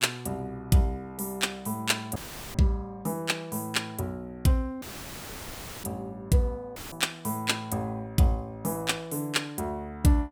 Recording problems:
dropout; at 2 s, at 5 s for 1 s and at 7 s; filled with static

